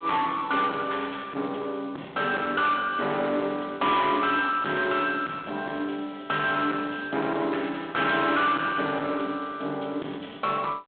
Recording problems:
phone line; 220 Hz to 3.9 kHz, G.726
distortion; soft clipping, signal-to-distortion ratio 8 dB

